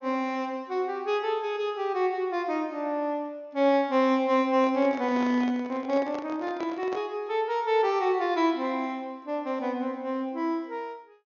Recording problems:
treble cut off; nothing above 6.8 kHz
handling noise; from 4.5 to 7 s; peak -7 dB vs average level

